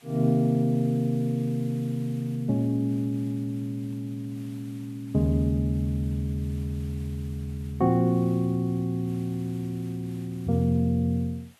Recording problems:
background hiss; SNR 27 dB

